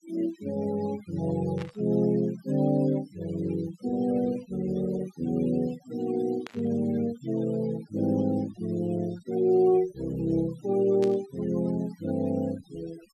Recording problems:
denoising artefacts; signal-to-artefact ratio 19 dB
static burst; at 1.5 s, at 6.5 s and at 11 s; peak -9 dB vs average level

